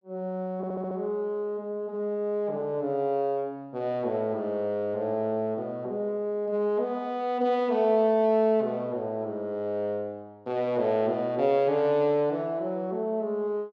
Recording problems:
stutter; at 0.5 s

